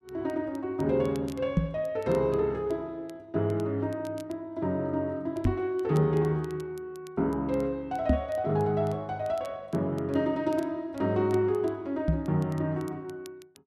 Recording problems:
crackle; vinyl, SNR 27 dB
knock on the microphone; 4 times, first at 1.5 s; peak +8 dB vs average level

